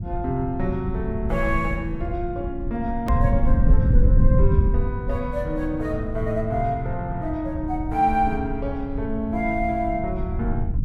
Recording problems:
rumble; below 94 Hz, SNR 0 dB
edit click; at 3 s

